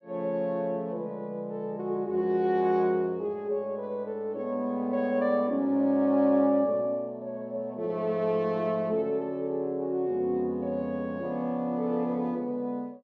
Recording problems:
none

